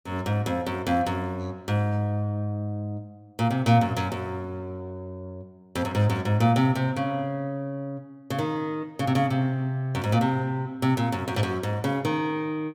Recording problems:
none

